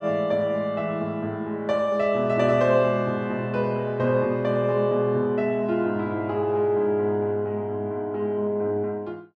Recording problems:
none

